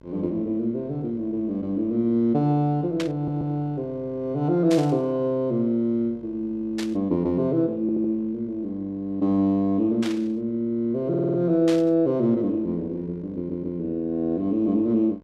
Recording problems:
hum; 50 Hz, harmonics up to 1.6 kHz, SNR 28 dB
static burst; 5 times, first at 3 s; peak -5 dB vs average level
stutter; 4 times, first at 3 s

